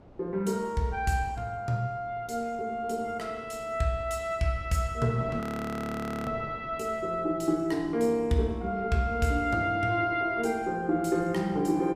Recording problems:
wind noise; below 560 Hz, SNR 19 dB
frozen audio; at 5.5 s for 1 s

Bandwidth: 15.5 kHz